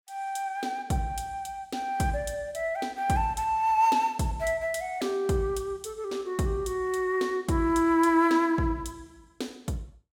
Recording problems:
none

